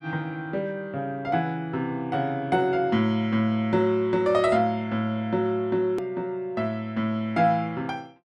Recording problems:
click at an edit; at 6 s

